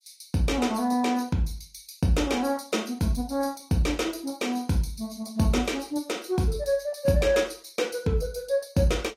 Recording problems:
codec artefacts; AAC, log-spectral distance 4 dB, nothing above 14.3 kHz

